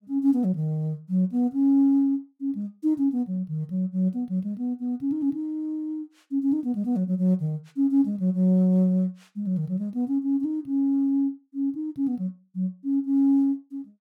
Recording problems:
none

